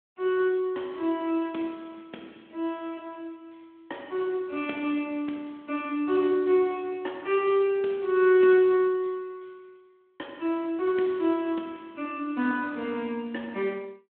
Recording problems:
telephone audio; 220 Hz to 3.6 kHz, Speex

